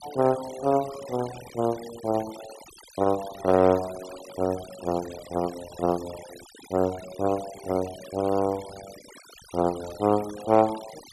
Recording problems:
noise reduction artefacts; signal-to-artefact ratio 17 dB

